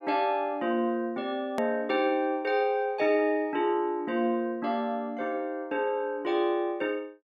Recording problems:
hard cut with a click; at 1.5 s

